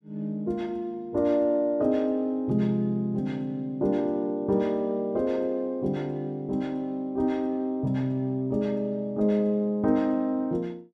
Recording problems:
none

